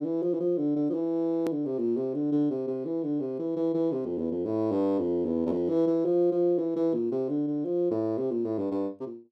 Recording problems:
hard cut with a click; at 1.5 s

